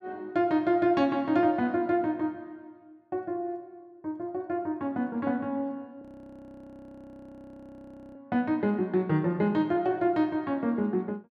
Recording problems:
frozen audio; at 6 s for 2 s

